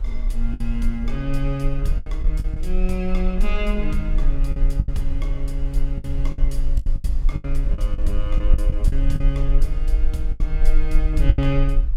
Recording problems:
rumble; below 40 Hz, strongest tone 20 Hz, SNR -4 dB
wind noise; below 560 Hz, SNR 20 dB
packet loss; 9% of the sound replaced, filled with the last packet

